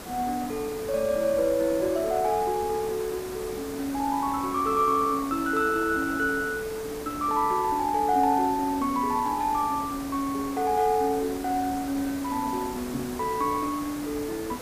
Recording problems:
hiss; slope -5 dB per octave, SNR 12 dB
knock on the microphone; at 13 s; peak -3 dB vs average level

